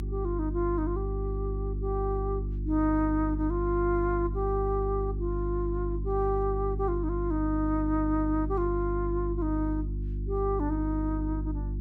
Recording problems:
mains hum; 50 Hz, harmonics up to 350 Hz, SNR 3 dB

